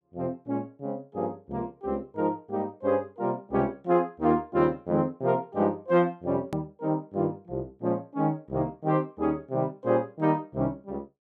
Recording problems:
edit click; at 6.5 s

